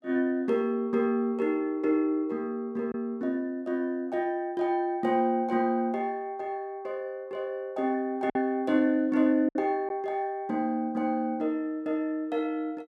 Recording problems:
packet loss; 1.1% of the sound replaced, filled with silence

